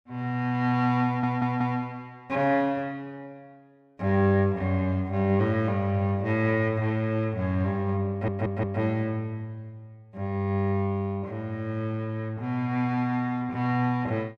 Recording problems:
audio stuttering; at 1 s and at 8 s

